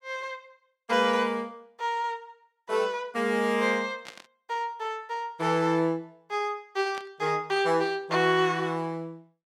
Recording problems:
static burst; at 4 s and at 7 s; peak -10 dB vs average level

